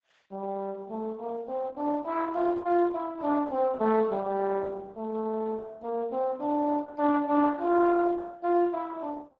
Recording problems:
lossy codec; Speex, then Opus, log-spectral distance 3 dB

